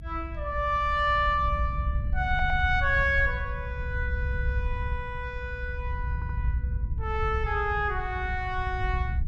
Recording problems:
low-frequency rumble; below 80 Hz, SNR 4 dB
audio stuttering; at 2.5 s and at 6 s

